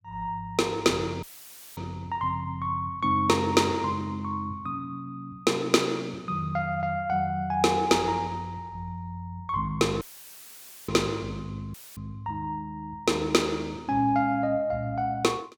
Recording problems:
dropout; at 1 s for 0.5 s, at 10 s for 1 s and at 12 s; filled with static

